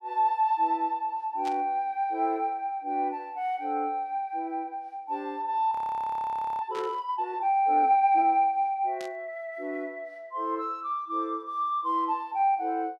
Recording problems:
static burst; at 1.5 s, at 7 s and at 9 s; peak -11 dB vs average level
audio freezing; at 5.5 s for 1 s

